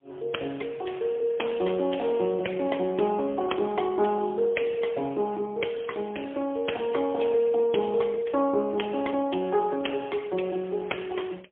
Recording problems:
telephone audio; 240 Hz to 3.4 kHz, AMR-NB, then MP3

